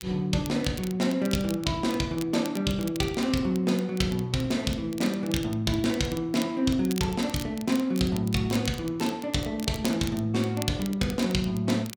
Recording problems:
crackle; vinyl, SNR 16 dB

